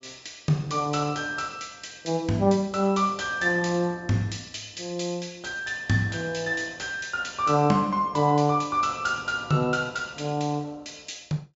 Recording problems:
treble missing; nothing above 8 kHz

